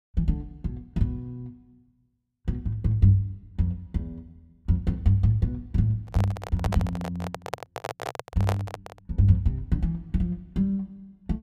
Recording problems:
handling noise; from 6 to 9 s; peak +1 dB vs average level

